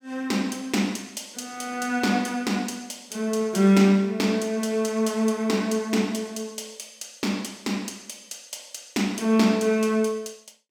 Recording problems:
none

